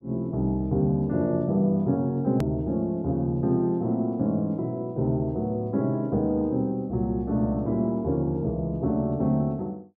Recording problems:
hard cut with a click; at 2.5 s

